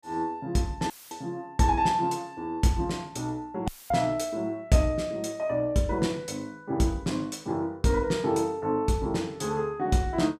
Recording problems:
dropout; at 1 s and at 3.5 s; filled with static

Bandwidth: 15 kHz